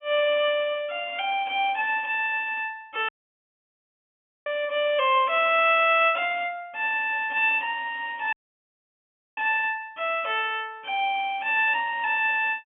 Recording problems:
treble cut off; nothing above 3.2 kHz
dropout; at 3 s for 1.5 s and at 8.5 s for 1 s

